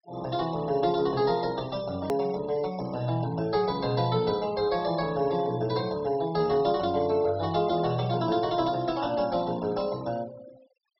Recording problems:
low-pass filter; nothing above 5.6 kHz
denoising artefacts; signal-to-artefact ratio 19 dB
edit click; at 2 s

